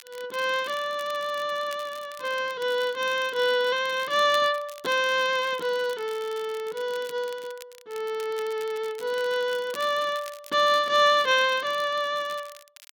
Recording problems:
crackling; vinyl, SNR 21 dB

